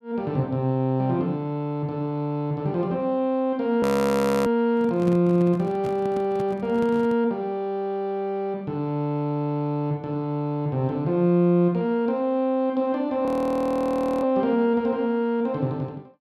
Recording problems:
audio freezing; at 4 s for 0.5 s and at 13 s for 1 s
microphone handling noise; from 4.5 to 7 s; peak -4 dB vs average level

